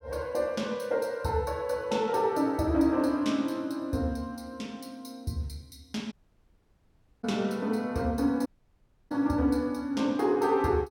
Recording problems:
dropout; at 6 s for 1 s and at 8.5 s for 0.5 s

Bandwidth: 17.5 kHz